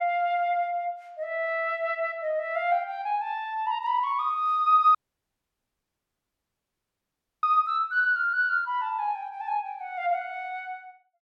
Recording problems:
dropout; at 5 s for 2.5 s

